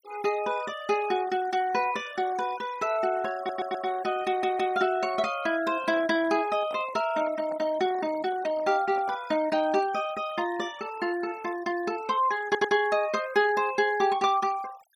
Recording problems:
noise reduction artefacts; signal-to-artefact ratio 18 dB
stutter; at 3.5 s, at 4.5 s and at 12 s
handling noise; from 5.5 to 9.5 s; peak -12 dB vs average level

